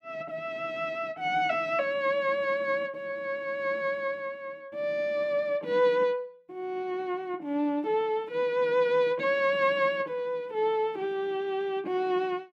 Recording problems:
none

